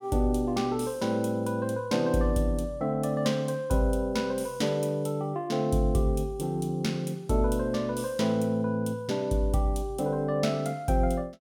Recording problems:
none

